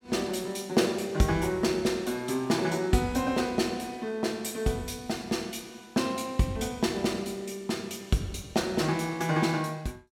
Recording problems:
none

